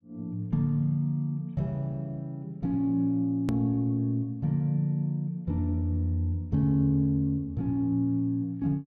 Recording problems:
edit click; at 3.5 s

